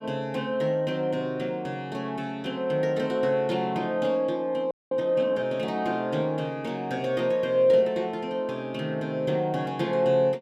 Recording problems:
audio freezing; at 4.5 s

